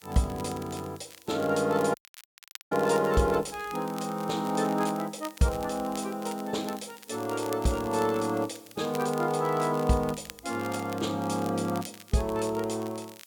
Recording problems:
background hiss; slope +1 dB per octave, SNR 25 dB
crackling; vinyl, SNR 18 dB
audio cutting out; at 2 s for 1 s

